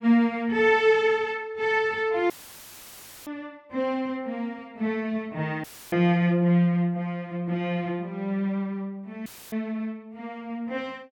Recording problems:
audio cutting out; at 2.5 s for 1 s, at 5.5 s and at 9.5 s; filled with static

